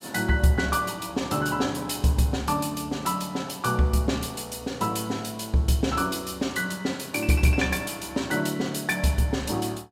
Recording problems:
none

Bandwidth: 16 kHz